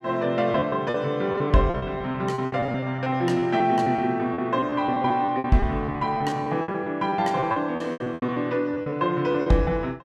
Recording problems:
lost packets; 16% of the sound replaced, filled with repeated pitch periods

